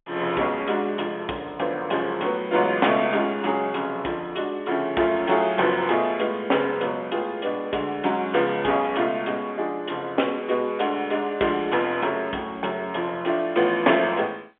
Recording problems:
telephone audio; 280 Hz to 3.5 kHz, G.711

